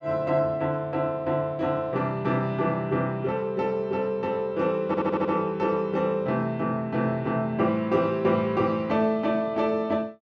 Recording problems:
stutter; at 5 s

